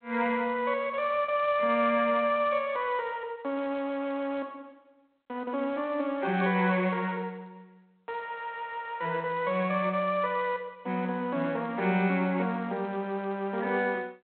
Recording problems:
phone line; 220 Hz to 3.5 kHz, G.726

